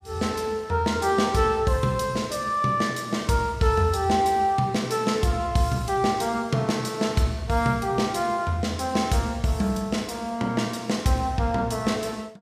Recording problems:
none

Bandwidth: 15 kHz